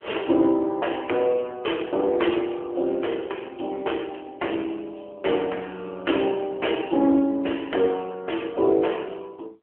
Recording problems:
phone line; 240 Hz to 3.2 kHz, AMR-NB

